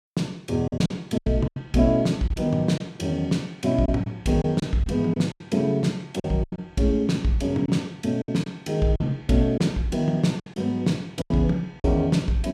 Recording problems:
packet loss; 9% of the sound replaced, filled with silence

